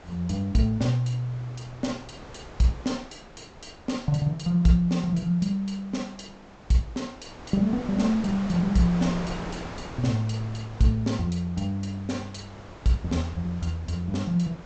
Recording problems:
treble cut off; nothing above 8 kHz
wind on the microphone; below 1.1 kHz, SNR 15 dB

